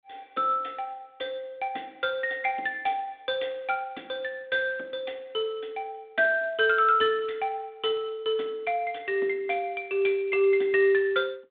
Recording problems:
telephone audio; 240 Hz to 3.8 kHz, G.726

